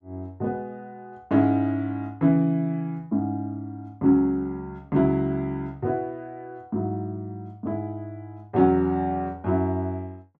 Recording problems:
none

